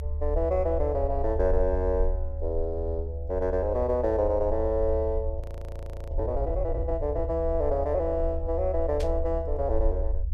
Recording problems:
low-frequency rumble; below 74 Hz, SNR 4 dB
frozen audio; at 5.5 s for 0.5 s
burst of static; at 9 s; peak -9 dB vs average level

